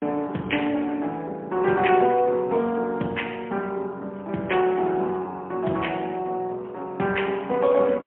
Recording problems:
telephone audio; 190 Hz to 3.2 kHz, AMR-NB, then MP3

